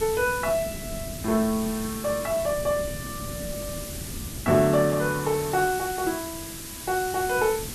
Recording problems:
hiss; slope +1 dB per octave, SNR 10 dB
wind noise; below 240 Hz, SNR 14 dB

